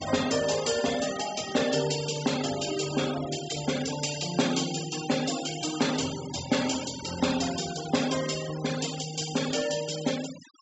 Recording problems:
low-pass filter; nothing above 7.7 kHz
noise reduction artefacts; signal-to-artefact ratio 10 dB

